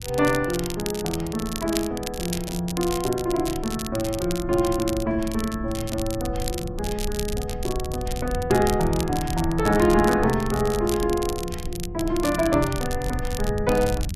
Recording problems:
low-frequency rumble; below 100 Hz, SNR 10 dB
crackle; vinyl, SNR 11 dB

